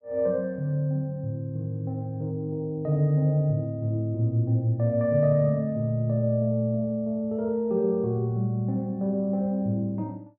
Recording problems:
none

